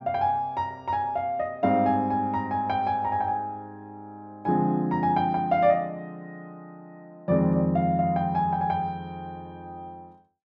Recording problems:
none

